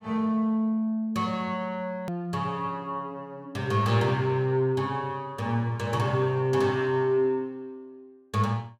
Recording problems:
click at an edit; at 2 s

